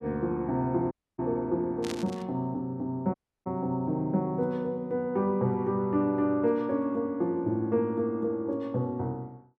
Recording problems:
audio cutting out; at 1 s and at 3 s
burst of static; at 2 s; peak -4 dB vs average level

